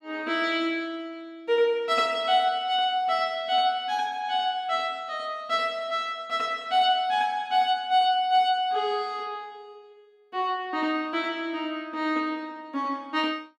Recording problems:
none

